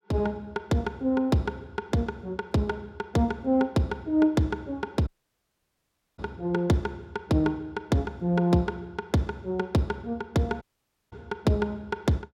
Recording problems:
audio cutting out; at 5 s for 1 s and at 11 s for 0.5 s

